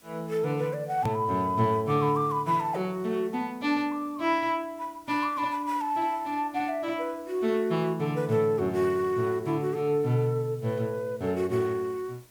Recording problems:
background hiss; slope -2 dB per octave, SNR 28 dB
edit click; at 1 s

